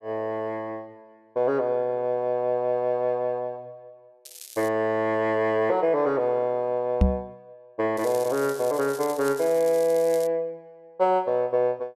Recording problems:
crackle; at 4.5 s and from 8 to 10 s; loose cable, SNR 16 dB
knock on the microphone; at 7 s; peak +8 dB vs average level

